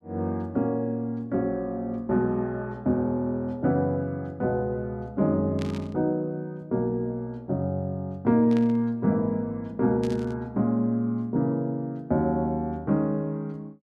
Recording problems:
burst of static; at 5.5 s, at 8.5 s and at 10 s; peak -9 dB vs average level

